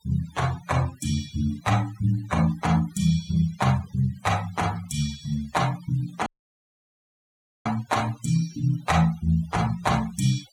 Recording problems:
noise reduction artefacts; signal-to-artefact ratio 18 dB
audio cutting out; at 6.5 s for 1.5 s

